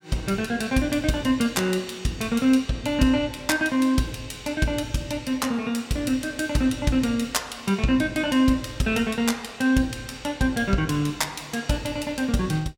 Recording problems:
none

